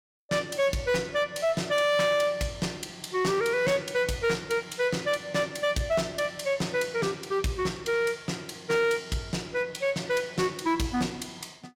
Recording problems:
distortion; hard clipping, uneven, signal-to-distortion ratio 12 dB

